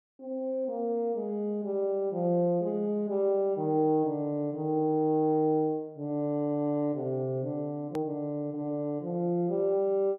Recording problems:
edit click; at 8 s

